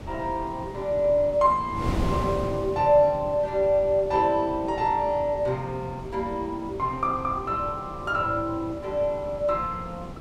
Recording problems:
wind noise; below 410 Hz, SNR 11 dB

